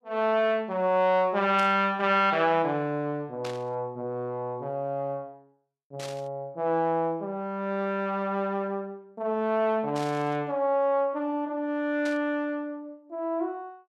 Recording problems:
burst of static; 5 times, first at 1.5 s; peak -8 dB vs average level

